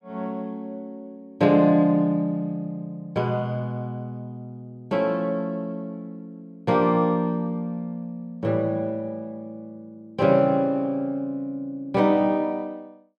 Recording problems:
none

